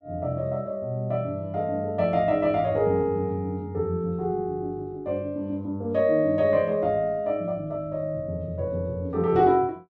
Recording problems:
none

